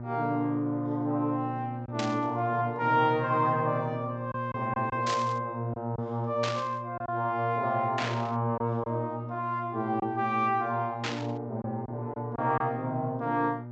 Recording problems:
low-pass filter; nothing above 8 kHz
hum; 60 Hz, harmonics up to 1.2 kHz, SNR 9 dB
lost packets; 3% of the sound replaced, filled with silence
burst of static; 5 times, first at 2 s; peak +1 dB vs average level

